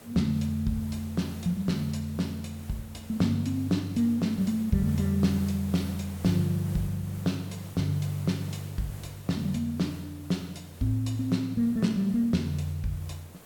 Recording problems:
hiss; slope -5 dB per octave, SNR 18 dB

